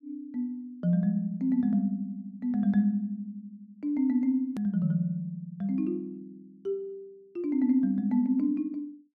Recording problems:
hard cut with a click; at 4.5 s

